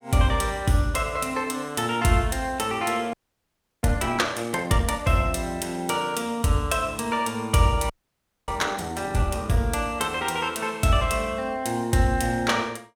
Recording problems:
frozen audio; at 3 s for 0.5 s and at 8 s for 0.5 s

